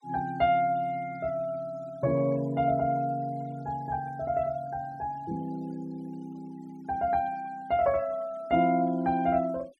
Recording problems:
denoising artefacts; signal-to-artefact ratio 25 dB

